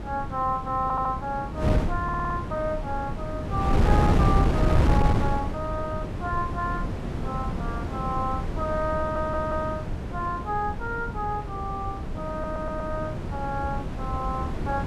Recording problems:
wind noise; below 260 Hz, SNR -1 dB
stutter; 4 times, first at 1 s

